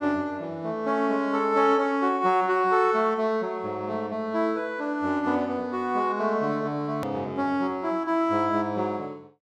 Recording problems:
edit click; at 7 s

